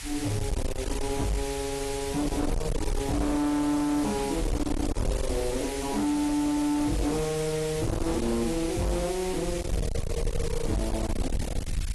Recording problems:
codec artefacts; AAC, log-spectral distance 7 dB, nothing above 12 kHz
distorted audio; hard clipping, signal-to-distortion ratio 7 dB
hiss; SNR 8 dB
wind noise; below 150 Hz, SNR 6 dB
crackle; from 4.5 to 5.5 s and from 6 to 11 s; loose cable, SNR 24 dB

